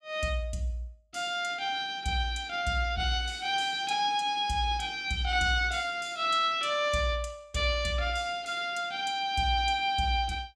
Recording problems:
none

